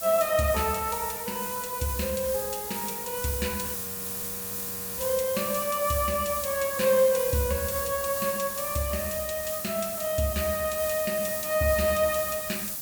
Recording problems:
background hiss; SNR 3 dB
frozen audio; at 3.5 s for 1 s

